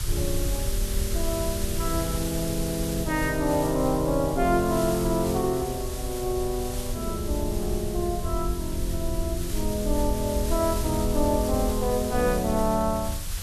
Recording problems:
hiss; slope +1 dB per octave, SNR 9 dB
rumble; below 76 Hz, SNR 6 dB

